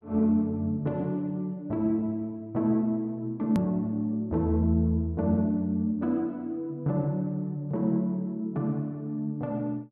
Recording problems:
edit click; at 3.5 s

